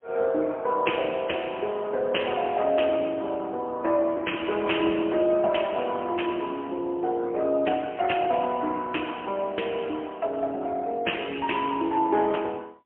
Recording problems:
phone line; 240 Hz to 3.3 kHz, AMR-NB, then MP3

